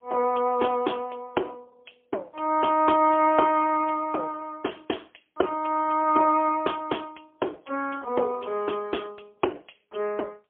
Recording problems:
telephone audio; 280 Hz to 3.3 kHz, AMR-NB, then MP3

